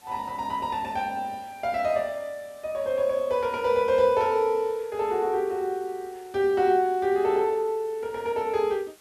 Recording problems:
hiss; slope -1 dB per octave, SNR 28 dB

